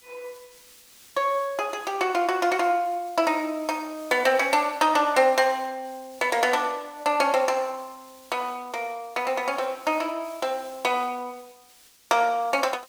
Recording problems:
background hiss; SNR 25 dB

